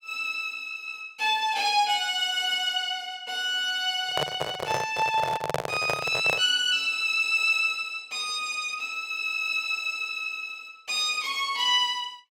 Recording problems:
handling noise; from 4 to 6.5 s; peak +2 dB vs average level

